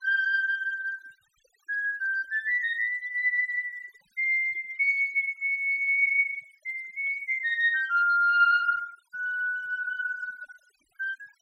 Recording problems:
noise reduction artefacts; signal-to-artefact ratio 27 dB

